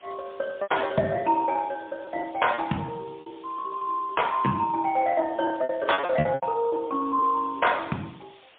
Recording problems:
telephone audio; 150 Hz to 3.4 kHz, AMR-NB, then MP3
hiss; SNR 27 dB
lost packets; 15% of the sound replaced, filled with repeated pitch periods

